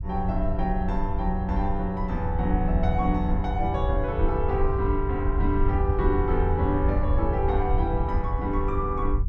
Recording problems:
low-frequency rumble; below 76 Hz, SNR 2 dB

